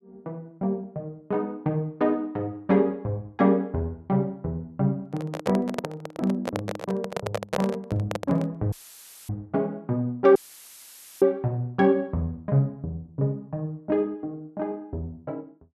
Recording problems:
microphone handling noise; from 5 to 8.5 s; peak +3 dB vs average level
dropout; at 8.5 s for 0.5 s and at 10 s for 1 s; filled with static

